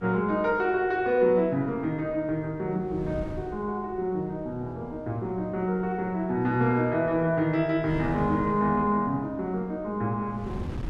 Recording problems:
wind on the microphone; below 250 Hz, SNR 17 dB

